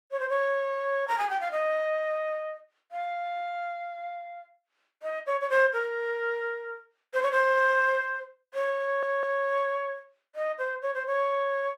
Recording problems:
audio stuttering; at 9 s

